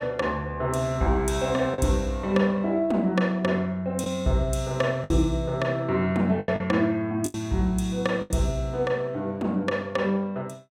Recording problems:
lost packets; 4% of the sound replaced, filled with the last packet

